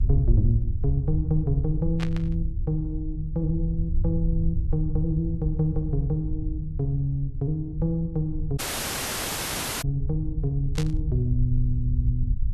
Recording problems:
hum; 60 Hz, harmonics up to 360 Hz, SNR 26 dB
rumble; below 76 Hz, SNR 2 dB
static burst; at 2 s and at 11 s; peak -2 dB vs average level
audio cutting out; at 8.5 s for 1.5 s

